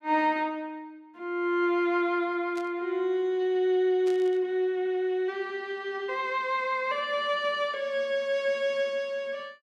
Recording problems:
static burst; at 2.5 s and at 4 s; peak -14 dB vs average level

